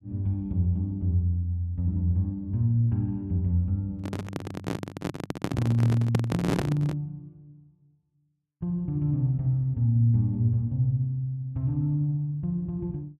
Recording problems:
microphone handling noise; from 4 to 7 s; peak +4 dB vs average level

